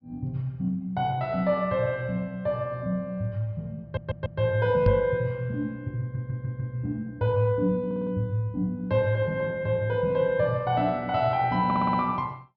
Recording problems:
treble cut off; nothing above 5.5 kHz
stutter; 4 times, first at 4 s
microphone thump; at 5 s; peak +6 dB vs average level

